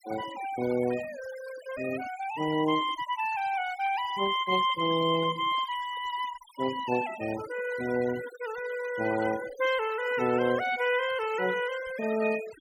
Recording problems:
denoising artefacts; signal-to-artefact ratio 15 dB

